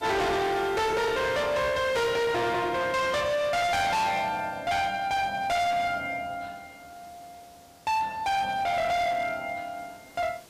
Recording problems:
distortion; hard clipping, signal-to-distortion ratio 6 dB
hiss; slope -3 dB per octave, SNR 25 dB

